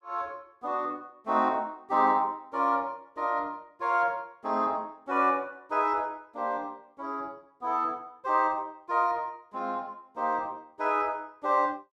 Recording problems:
none

